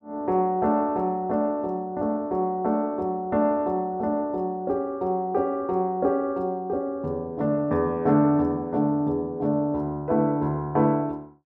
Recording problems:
none

